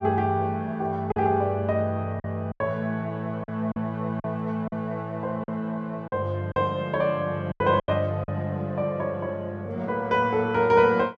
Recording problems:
lost packets; 6% of the sound replaced, filled with silence

